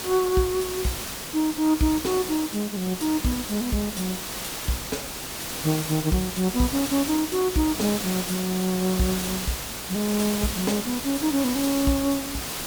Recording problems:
hiss; slope -2 dB per octave, SNR 5 dB

